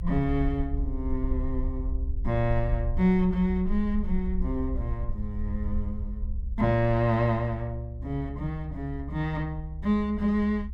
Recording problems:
rumble; below 66 Hz, SNR 6 dB

